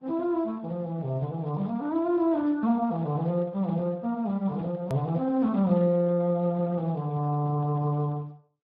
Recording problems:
codec artefacts; Vorbis, then Speex, log-spectral distance 2 dB, nothing above 13.1 kHz
hard cut with a click; at 5 s

